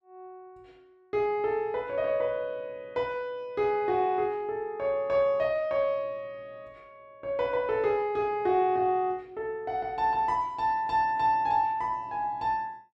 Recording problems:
none

